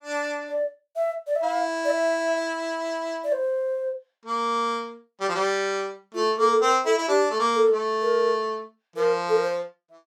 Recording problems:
none

